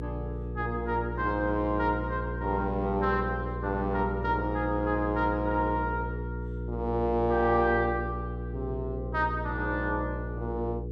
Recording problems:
electrical hum; 60 Hz, harmonics up to 480 Hz, SNR 5 dB

